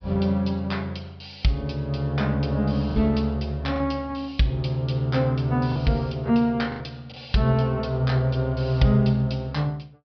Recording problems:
low-pass filter; nothing above 5.5 kHz
lost packets; 3% of the sound replaced, filled with the last packet

